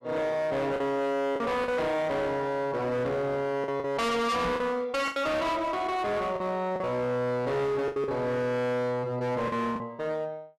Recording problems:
distortion; hard clipping, uneven, signal-to-distortion ratio 7 dB
lost packets; 6% of the sound replaced, filled with the last packet
microphone thump; at 4.5 s; peak -1 dB vs average level

